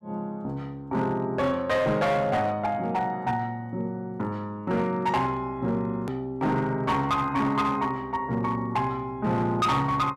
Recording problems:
distortion; hard clipping, signal-to-distortion ratio 11 dB
hard cut with a click; at 6 s

